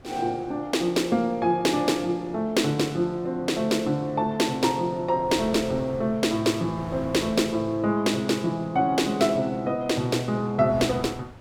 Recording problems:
wind noise; below 650 Hz, SNR 21 dB

